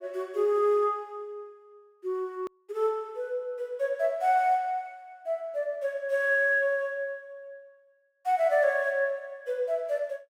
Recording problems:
hard cut with a click; at 2.5 s

